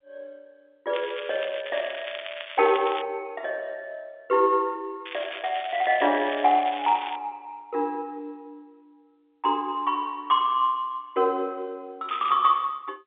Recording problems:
telephone audio; 280 Hz to 3.6 kHz, G.711
crackle; from 1 to 3 s, from 5 to 7 s and at 12 s; loose cable, SNR 12 dB

